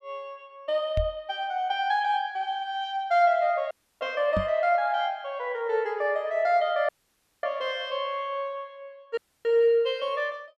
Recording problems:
knock on the microphone; at 1 s and at 4.5 s; peak 0 dB vs average level
dropout; at 3.5 s, at 7 s for 0.5 s and at 9 s

